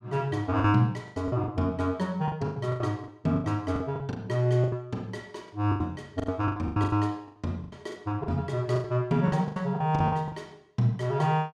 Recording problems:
packet loss; 15% of the sound replaced, filled with the last packet

